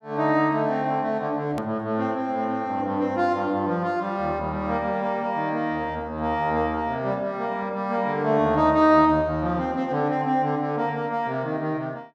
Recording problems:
hard cut with a click; at 1.5 s

